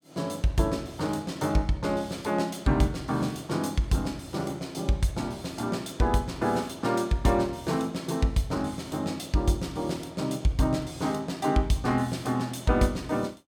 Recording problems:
none

